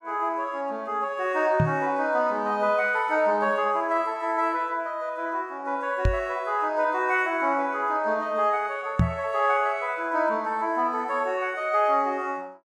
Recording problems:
microphone thump; at 1.5 s, at 6 s and at 9 s; peak +7 dB vs average level

